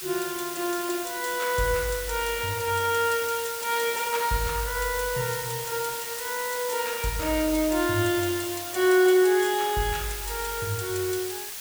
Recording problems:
background hiss; slope +3 dB per octave, SNR 7 dB

